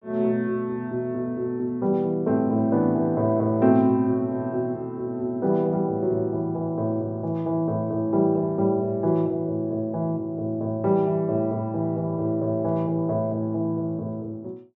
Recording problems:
treble missing; nothing above 8 kHz

